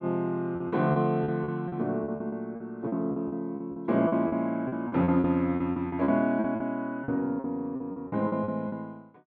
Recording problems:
lost packets; 16% of the sound replaced, filled with repeated pitch periods

